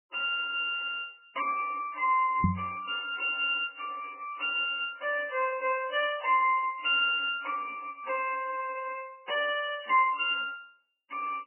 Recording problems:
lossy compression; MP3, log-spectral distance 6 dB, nothing above 2.6 kHz
microphone bump; at 2.5 s; peak +7 dB vs average level

